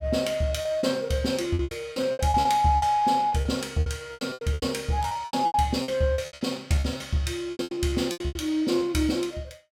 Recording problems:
packet loss; 19% of the sound replaced, filled with repeated pitch periods

